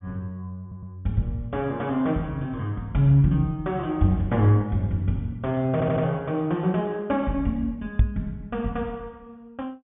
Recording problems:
low-pass filter; nothing above 3.6 kHz
stutter; at 0.5 s and at 5.5 s
microphone thump; at 8 s; peak +8 dB vs average level

